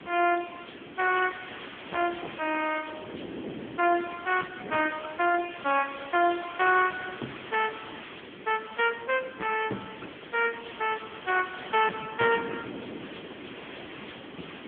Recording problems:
telephone audio; 220 Hz to 2.9 kHz, AMR-NB
distortion; hard clipping, signal-to-distortion ratio 11 dB
background hiss; SNR 17 dB
wind noise; below 480 Hz, SNR 16 dB
crackle; from 7 to 9 s and from 9.5 to 12 s; loose cable, SNR 27 dB

